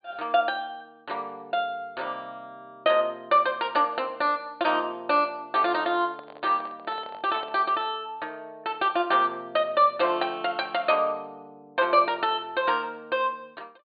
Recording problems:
treble cut off; nothing above 4.6 kHz
microphone handling noise; from 6 to 7.5 s; peak -11 dB vs average level

